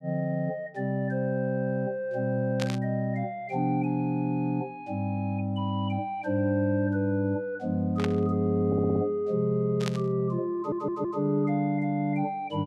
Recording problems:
burst of static; at 2.5 s, at 8 s and at 10 s; peak -2 dB vs average level
stutter; at 8.5 s and at 11 s

